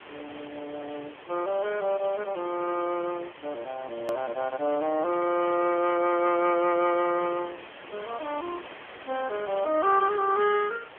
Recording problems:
phone line; 240 Hz to 3.3 kHz, AMR-NB
hiss; SNR 17 dB
click at an edit; at 4 s

